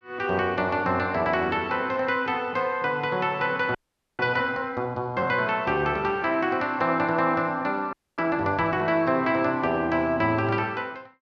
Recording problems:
frozen audio; at 4 s and at 8 s

